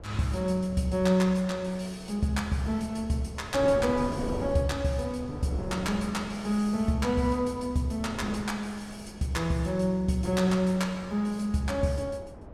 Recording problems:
wind noise; below 470 Hz, SNR 14 dB

